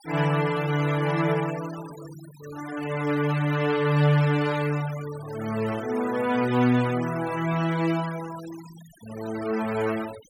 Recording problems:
noise reduction artefacts; signal-to-artefact ratio 16 dB

